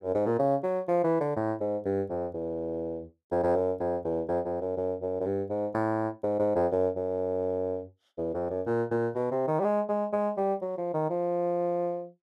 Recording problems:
none

